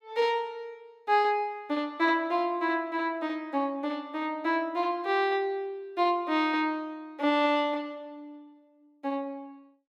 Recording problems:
none

